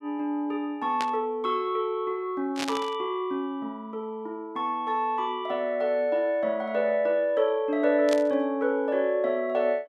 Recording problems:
static burst; at 1 s, at 2.5 s and at 8 s; peak -1 dB vs average level

